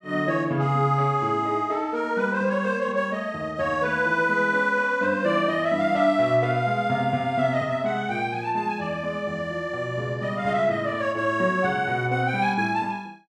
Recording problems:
none

